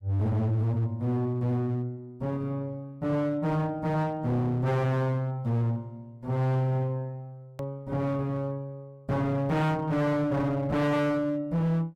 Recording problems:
distorted audio; hard clipping, signal-to-distortion ratio 7 dB
hard cut with a click; at 7.5 s

